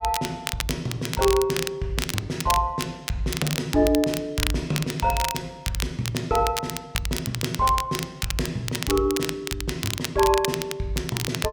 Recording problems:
crackling; vinyl, SNR 5 dB

